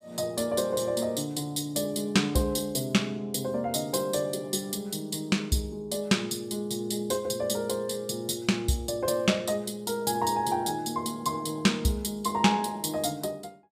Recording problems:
none

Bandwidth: 15 kHz